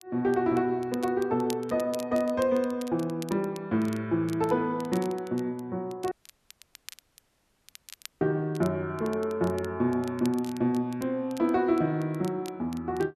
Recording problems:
crackling; vinyl, SNR 20 dB
dropout; at 6 s for 2 s

